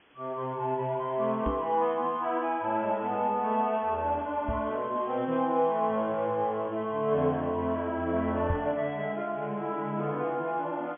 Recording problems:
treble missing; nothing above 3.4 kHz
background hiss; SNR 29 dB
knock on the microphone; at 1.5 s, at 4.5 s and at 8.5 s; peak +1 dB vs average level

